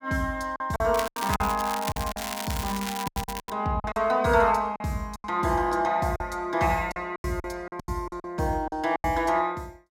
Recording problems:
lost packets; 12% of the sound replaced, filled with silence
crackling; from 1 to 3.5 s; loose cable, SNR 8 dB

